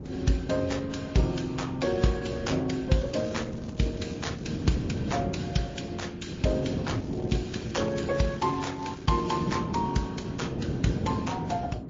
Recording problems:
lossy codec; Opus, then MP3, log-spectral distance 4 dB
wind on the microphone; below 290 Hz, SNR 4 dB
crackling; from 3 to 5 s and from 7 to 9.5 s; loose cable, SNR 24 dB

